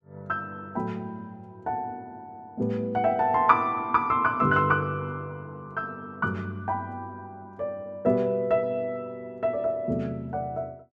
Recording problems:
none

